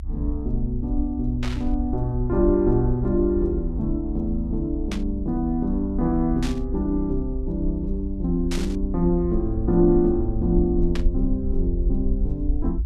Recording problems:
rumble; below 60 Hz, SNR 5 dB
burst of static; 5 times, first at 1.5 s; peak -5 dB vs average level

